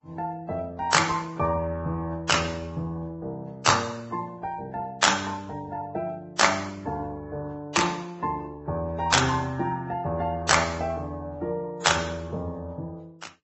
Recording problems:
codec artefacts; AAC, then Vorbis, log-spectral distance 3 dB, nothing above 7.8 kHz

